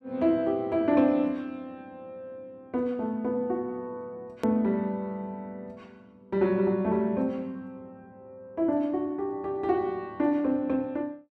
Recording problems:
edit click; at 4.5 s

